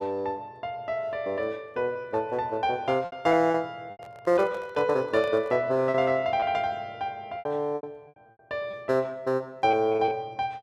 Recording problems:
packet loss; 6% of the sound replaced, filled with repeated pitch periods
handling noise; from 4 to 5.5 s; peak -11 dB vs average level

